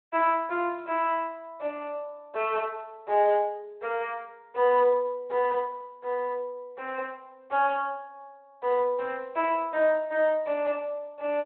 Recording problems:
phone line; 300 Hz to 3.6 kHz, Speex

